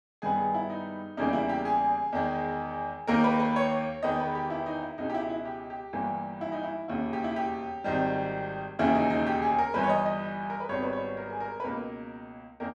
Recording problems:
none

